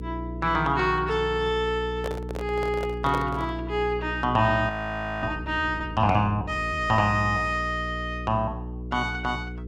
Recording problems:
hum; 60 Hz, harmonics up to 480 Hz, SNR 10 dB
microphone handling noise; from 2 to 3.5 s; peak -2 dB vs average level
audio freezing; at 4.5 s for 0.5 s

